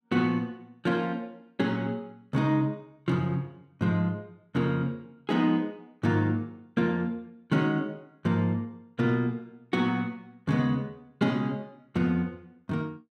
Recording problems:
none

